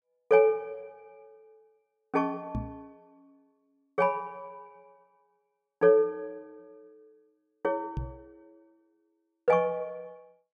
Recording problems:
microphone bump; at 2.5 s and at 8 s; peak -3 dB vs average level

